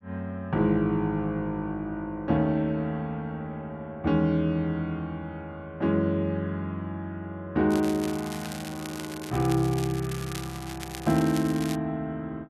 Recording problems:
crackling; from 7.5 to 12 s; loose cable, SNR 13 dB

